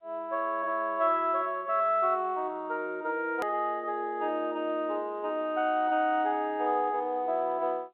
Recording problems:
telephone audio; 320 Hz to 3.3 kHz, G.711
hard cut with a click; at 3.5 s

